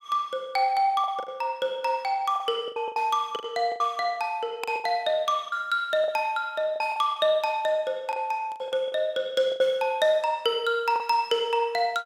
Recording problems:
lost packets; 9% of the sound replaced, filled with the last packet

